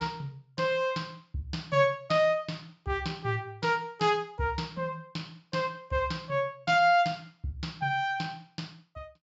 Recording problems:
low-pass filter; nothing above 8 kHz

